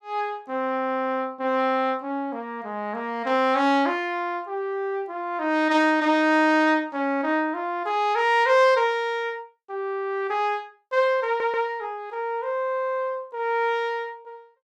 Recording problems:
audio stuttering; at 11 s

